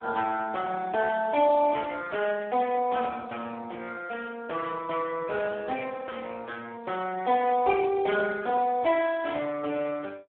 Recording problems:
phone line; 260 Hz to 2.1 kHz, Speex

